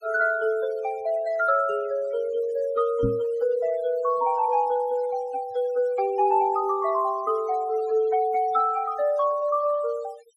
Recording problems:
denoising artefacts; signal-to-artefact ratio 22 dB
microphone thump; at 3 s; peak +1 dB vs average level

